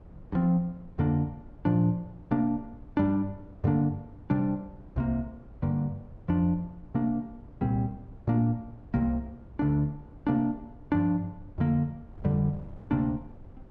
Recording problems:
wind on the microphone; below 170 Hz, SNR 21 dB

